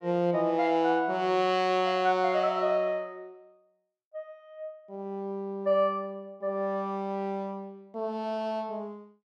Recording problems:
none

